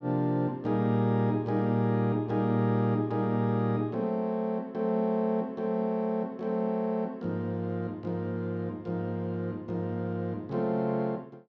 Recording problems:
none

